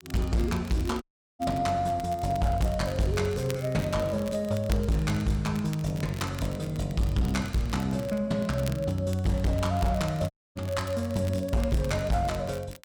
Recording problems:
distorted audio; hard clipping, uneven, signal-to-distortion ratio 11 dB
crackle; vinyl, SNR 19 dB
dropout; at 1 s and at 10 s

